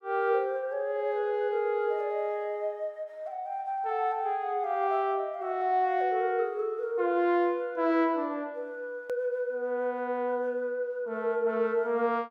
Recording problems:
hard cut with a click; at 9 s

